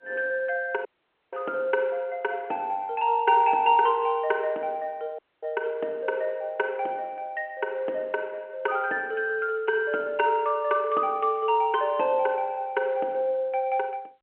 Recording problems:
telephone audio; 280 Hz to 3.4 kHz, G.711
audio cutting out; at 1 s and at 5 s

